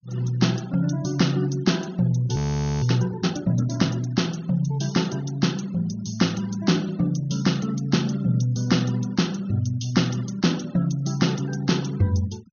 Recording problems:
treble missing; nothing above 6.5 kHz
denoising artefacts; signal-to-artefact ratio 22 dB
frozen audio; at 2.5 s

